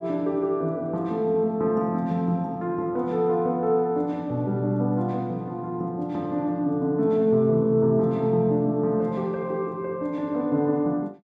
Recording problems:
none

